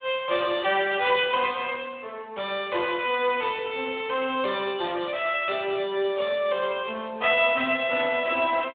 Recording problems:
phone line; 300 Hz to 3.7 kHz, Speex

